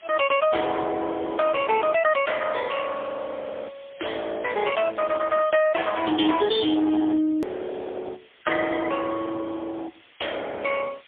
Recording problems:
phone line; 280 Hz to 3.4 kHz, AMR-NB, then MP3
distorted audio; hard clipping, signal-to-distortion ratio 12 dB
hiss; SNR 27 dB
edit click; at 7.5 s

